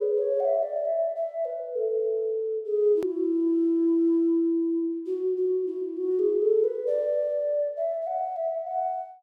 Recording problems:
click at an edit; at 3 s

